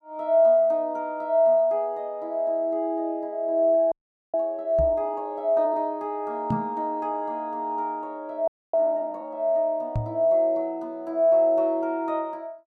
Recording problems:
audio freezing; at 4 s and at 8.5 s
microphone bump; at 5 s, at 6.5 s and at 10 s; peak +1 dB vs average level

